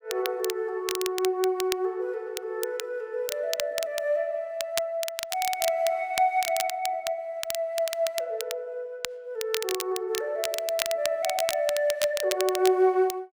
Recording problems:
crackling; vinyl, SNR 7 dB

